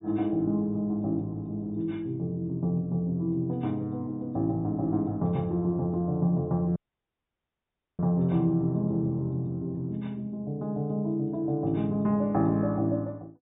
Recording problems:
treble missing; nothing above 4 kHz
dropout; at 7 s for 1 s

